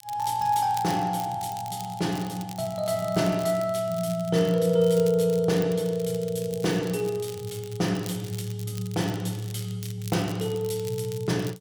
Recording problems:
crackle; vinyl, SNR 18 dB

